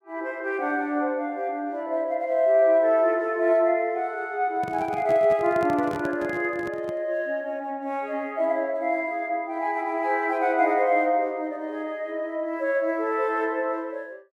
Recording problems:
microphone handling noise; from 4.5 to 7 s; peak -6 dB vs average level

